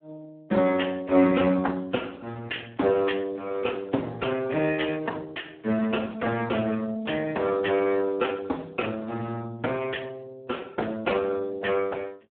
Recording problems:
telephone audio; 170 Hz to 2.6 kHz, Speex

